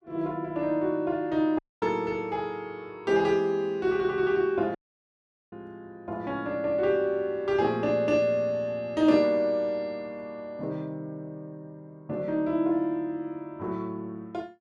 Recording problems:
audio cutting out; at 1.5 s and at 5 s for 1 s

